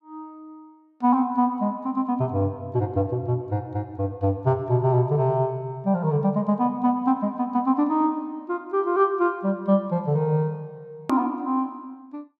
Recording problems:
edit click; at 11 s

